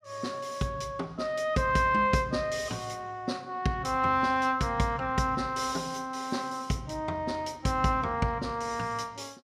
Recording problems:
none

